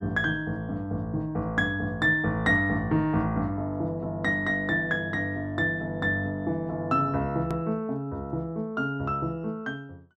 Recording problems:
click at an edit; at 7.5 s

